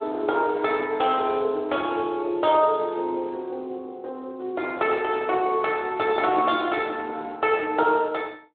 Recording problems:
phone line; 280 Hz to 3.6 kHz, Speex

